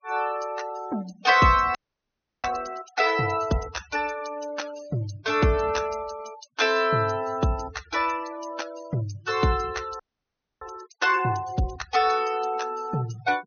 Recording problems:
treble missing; nothing above 6.3 kHz
denoising artefacts; signal-to-artefact ratio 19 dB
frozen audio; at 2 s for 0.5 s and at 10 s for 0.5 s

